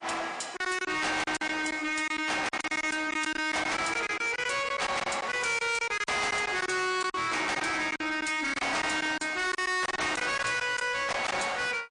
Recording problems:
codec artefacts; MP3, log-spectral distance 5 dB, nothing above 8.7 kHz
distortion; soft clipping, signal-to-distortion ratio 7 dB
lost packets; 10% of the sound replaced, filled with silence

